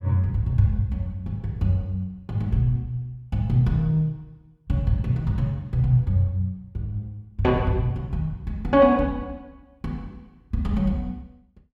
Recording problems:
none

